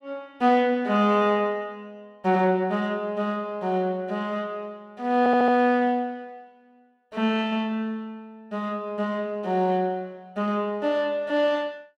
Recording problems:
audio stuttering; at 5 s

